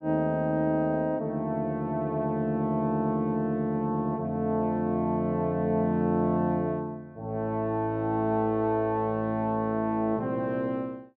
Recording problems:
none

